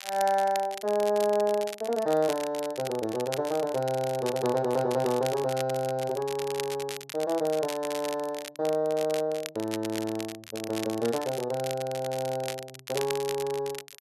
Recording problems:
crackle; vinyl, SNR 12 dB

